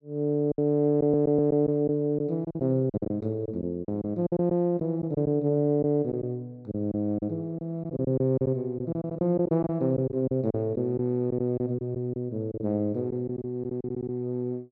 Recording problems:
packet loss; 9% of the sound replaced, filled with silence
stutter; at 1 s and at 14 s

